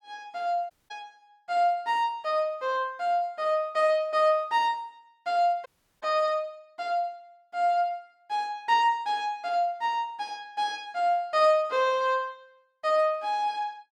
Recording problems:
dropout; at 0.5 s and at 5.5 s

